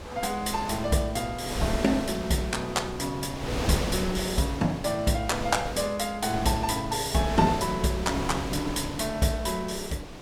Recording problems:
wind on the microphone; below 1 kHz, SNR 7 dB

